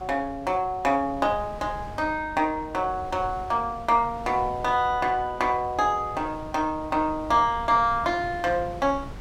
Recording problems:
wind on the microphone; below 410 Hz, SNR 17 dB

